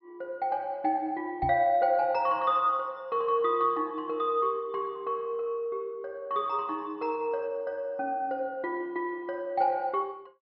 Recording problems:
treble cut off; nothing above 5.3 kHz
knock on the microphone; at 1.5 s; peak -3 dB vs average level

